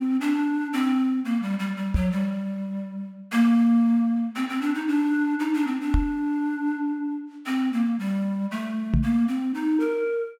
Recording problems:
knock on the microphone; at 2 s, at 6 s and at 9 s; peak +5 dB vs average level

